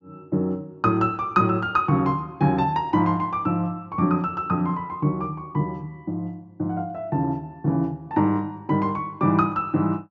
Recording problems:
low-pass filter; nothing above 8 kHz

